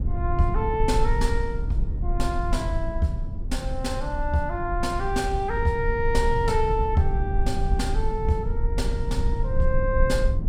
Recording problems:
rumble; below 68 Hz, SNR 1 dB

